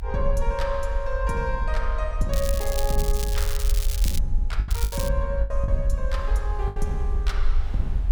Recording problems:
low-frequency rumble; below 50 Hz, SNR -3 dB
wind on the microphone; below 1.2 kHz, SNR 22 dB
packet loss; 4% of the sound replaced, filled with the last packet
crackle; from 2.5 to 4 s and at 4.5 s; loose cable, SNR 4 dB

